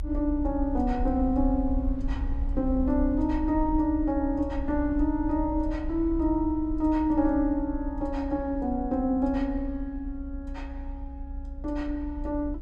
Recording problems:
rumble; below 62 Hz, SNR 8 dB

